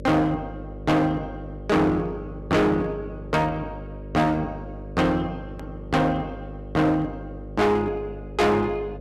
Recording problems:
distorted audio; hard clipping, uneven, signal-to-distortion ratio 6 dB
electrical hum; 50 Hz, harmonics up to 600 Hz, SNR 14 dB
hard cut with a click; at 5.5 s

